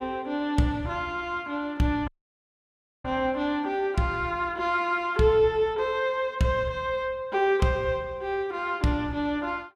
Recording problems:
audio cutting out; at 2 s for 1 s

